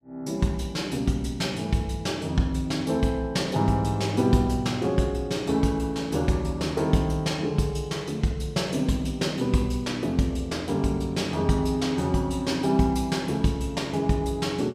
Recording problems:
none

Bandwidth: 15.5 kHz